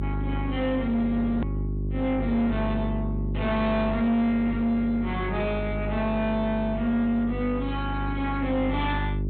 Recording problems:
low-pass filter; nothing above 4 kHz
distorted audio; soft clipping, signal-to-distortion ratio 11 dB
electrical hum; 50 Hz, harmonics up to 400 Hz, SNR 5 dB
edit click; at 1.5 s

